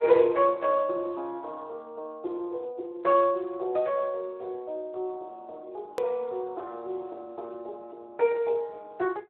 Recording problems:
telephone audio; 320 Hz to 2.8 kHz, Speex
hard cut with a click; at 6 s

